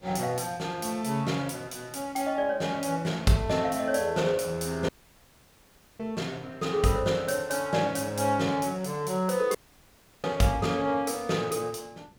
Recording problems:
background hiss; SNR 29 dB
dropout; at 5 s for 1 s and at 9.5 s for 0.5 s

